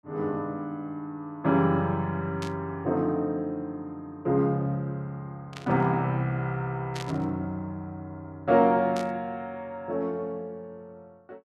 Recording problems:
burst of static; 4 times, first at 2.5 s; peak -6 dB vs average level

